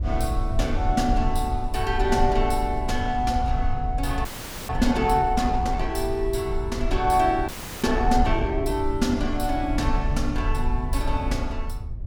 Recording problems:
low-frequency rumble; below 68 Hz, SNR 4 dB
frozen audio; at 4.5 s and at 7.5 s

